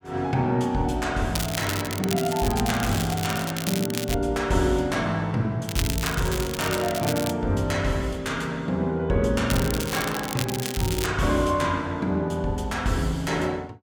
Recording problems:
crackle; from 1.5 to 4 s, from 5.5 to 7.5 s and from 9.5 to 11 s; loose cable, SNR 7 dB

